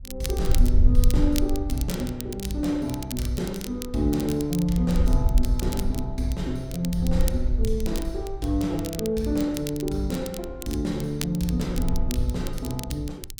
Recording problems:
wind noise; below 60 Hz, SNR 1 dB
crackling; vinyl, SNR 11 dB

